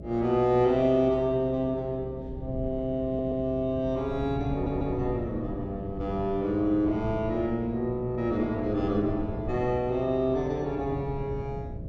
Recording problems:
hum; 60 Hz, harmonics up to 660 Hz, SNR 15 dB
wind noise; below 160 Hz, SNR 13 dB
audio stuttering; at 3 s and at 4.5 s

